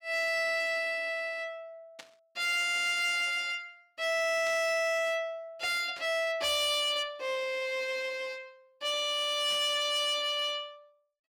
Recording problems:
distorted audio; hard clipping, uneven, signal-to-distortion ratio 11 dB
burst of static; 4 times, first at 2 s; peak -11 dB vs average level

